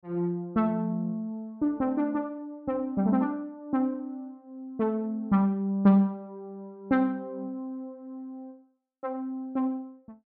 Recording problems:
none

